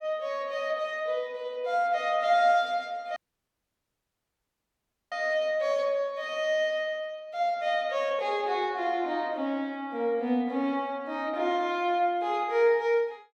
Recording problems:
audio cutting out; at 3 s for 2 s

